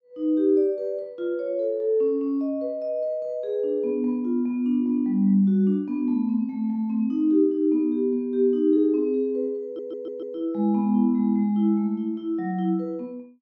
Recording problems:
audio stuttering; at 9.5 s

